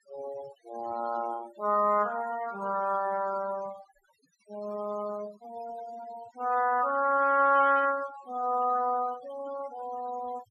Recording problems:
denoising artefacts; signal-to-artefact ratio 18 dB

